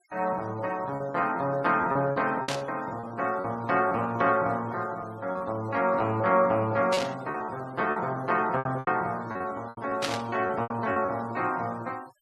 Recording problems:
denoising artefacts; signal-to-artefact ratio 25 dB
packet loss; 9% of the sound replaced, filled with repeated pitch periods
burst of static; at 2.5 s, at 7 s and at 10 s; peak +2 dB vs average level

